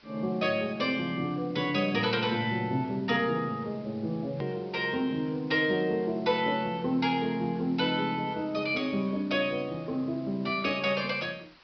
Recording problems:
treble cut off; nothing above 5.5 kHz
background hiss; SNR 27 dB
edit click; at 4.5 s

